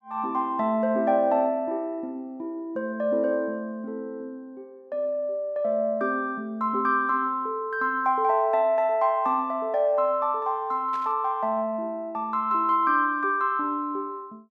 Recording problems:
static burst; at 11 s; peak -15 dB vs average level

